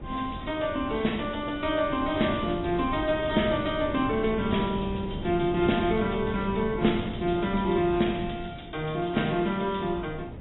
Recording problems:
codec artefacts; AAC, log-spectral distance 9 dB, nothing above 3.7 kHz
wind noise; below 310 Hz, SNR 10 dB

